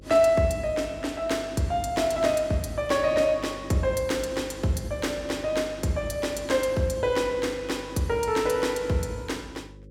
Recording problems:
hum; 50 Hz, harmonics up to 550 Hz, SNR 20 dB

